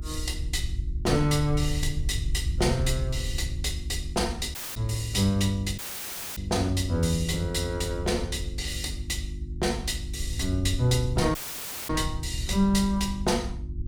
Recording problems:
electrical hum; 50 Hz, harmonics up to 350 Hz, SNR 12 dB
rumble; below 74 Hz, SNR 7 dB
dropout; at 4.5 s, at 6 s for 0.5 s and at 11 s for 0.5 s

